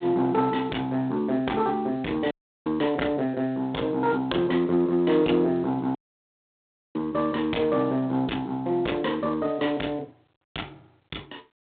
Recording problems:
telephone audio; 190 Hz to 3.8 kHz, G.726
distortion; soft clipping, signal-to-distortion ratio 10 dB
dropout; at 2.5 s and at 6 s for 1 s

